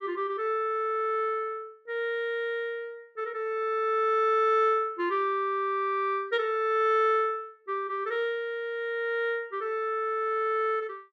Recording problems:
none

